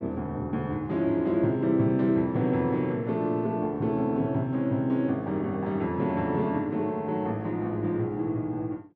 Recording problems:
none

